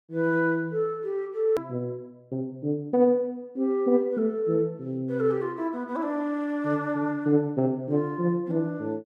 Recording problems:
edit click; at 1.5 s

